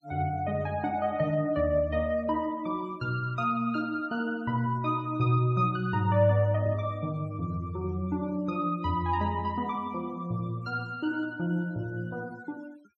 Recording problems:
noise reduction artefacts; signal-to-artefact ratio 27 dB

